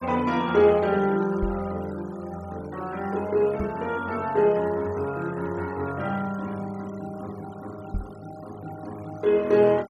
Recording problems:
denoising artefacts; signal-to-artefact ratio 22 dB
knock on the microphone; at 1.5 s, at 3.5 s and at 8 s; peak -2 dB vs average level

